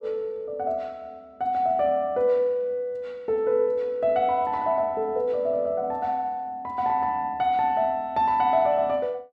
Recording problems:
none

